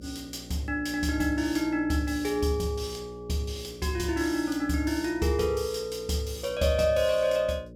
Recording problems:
hum; 60 Hz, harmonics up to 600 Hz, SNR 18 dB

